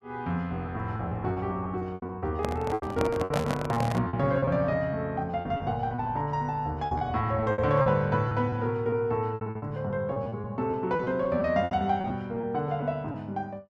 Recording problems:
packet loss; 12% of the sound replaced, filled with repeated pitch periods
microphone handling noise; from 2.5 to 4 s; peak +3 dB vs average level

